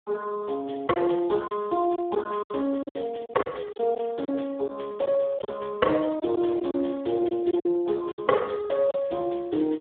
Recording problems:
phone line; 280 Hz to 2 kHz, Speex
lost packets; 8% of the sound replaced, filled with silence

